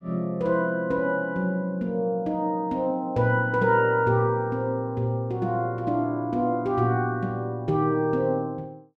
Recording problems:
none

